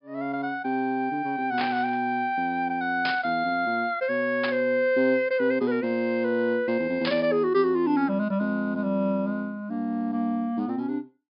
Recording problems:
treble cut off; nothing above 5.5 kHz
static burst; 4 times, first at 1.5 s; peak -1 dB vs average level

